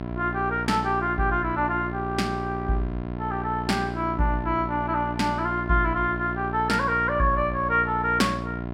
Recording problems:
electrical hum; 60 Hz, harmonics up to 1.7 kHz, SNR 7 dB

